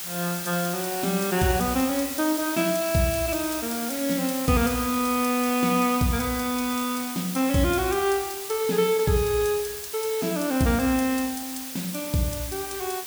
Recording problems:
hiss; slope +1 dB per octave, SNR 7 dB

